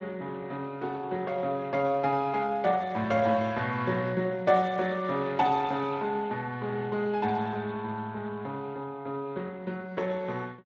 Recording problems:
codec artefacts; Speex, log-spectral distance 3 dB

